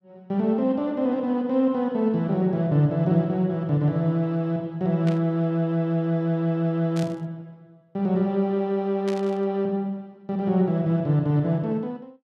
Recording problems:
static burst; at 5 s, at 7 s and at 9 s; peak -10 dB vs average level

